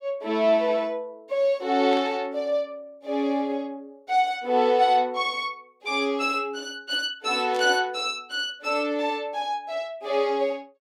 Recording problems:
burst of static; at 2 s and at 7.5 s; peak -11 dB vs average level

